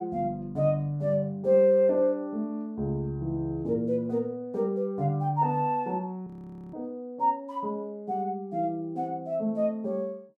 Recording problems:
frozen audio; at 6.5 s

